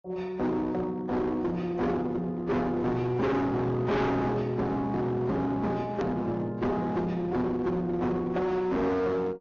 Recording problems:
low-pass filter; nothing above 6.7 kHz
lossy compression; AAC, log-spectral distance 2 dB
distortion; hard clipping, uneven, signal-to-distortion ratio 6 dB
click at an edit; at 6 s

